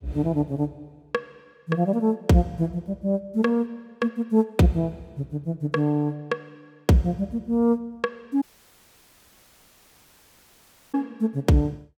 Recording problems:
dropout; at 8.5 s for 2.5 s

